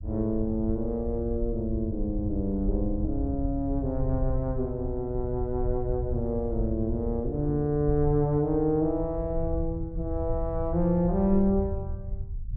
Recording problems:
rumble; below 82 Hz, SNR 6 dB

